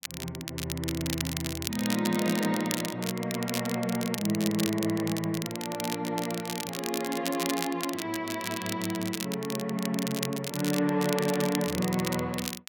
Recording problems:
crackling; vinyl, SNR 6 dB

